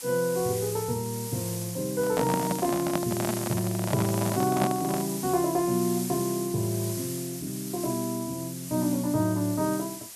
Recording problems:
hiss; SNR 8 dB
microphone handling noise; from 2 to 5 s; peak +3 dB vs average level

